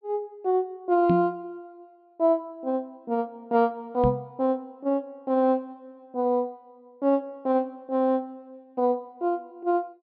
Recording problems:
treble missing; nothing above 5.5 kHz
microphone bump; at 1 s and at 4 s; peak +4 dB vs average level

